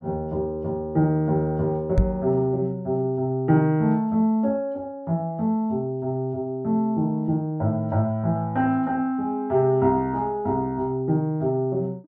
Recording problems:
microphone bump; at 2 s; peak +6 dB vs average level

